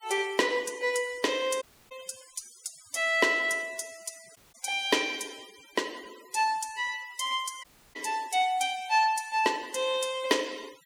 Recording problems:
noise reduction artefacts; signal-to-artefact ratio 20 dB
audio cutting out; at 1.5 s, at 4.5 s and at 7.5 s

